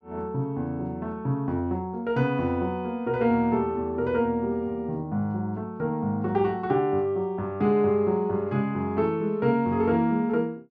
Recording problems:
none

